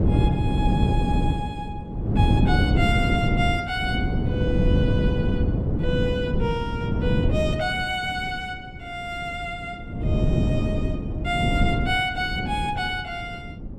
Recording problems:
wind on the microphone; below 230 Hz, SNR -4 dB

